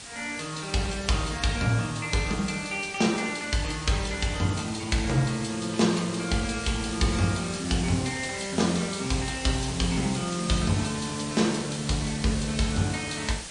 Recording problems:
codec artefacts; MP3, log-spectral distance 11 dB
hiss; slope 0 dB per octave, SNR 10 dB

